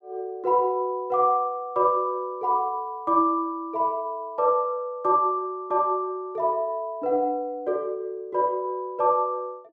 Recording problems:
none

